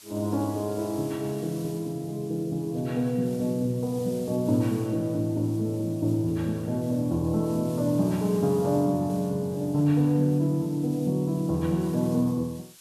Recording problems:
background hiss; slope +3 dB per octave, SNR 21 dB

